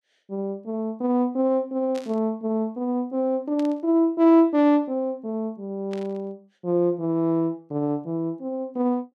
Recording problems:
burst of static; at 2 s, at 3.5 s and at 6 s; peak -14 dB vs average level

